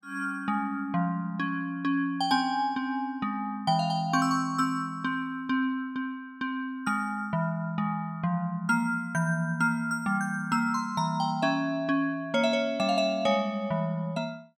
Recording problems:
none

